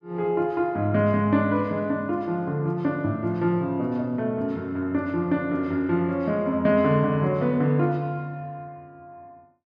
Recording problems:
none

